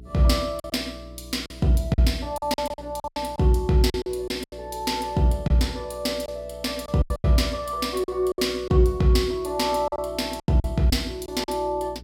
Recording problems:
electrical hum; 60 Hz, harmonics up to 420 Hz, SNR 20 dB
packet loss; 10% of the sound replaced, filled with silence

